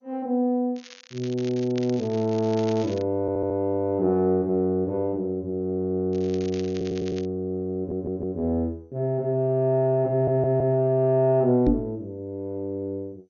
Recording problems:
lossy codec; MP2, log-spectral distance 2 dB
crackle; from 1 to 3 s and from 6 to 7.5 s; loose cable, SNR 19 dB
audio stuttering; 4 times, first at 3 s
microphone thump; at 12 s; peak +7 dB vs average level

